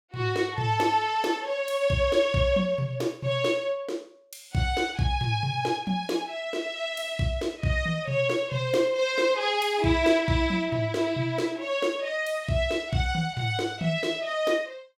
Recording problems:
none

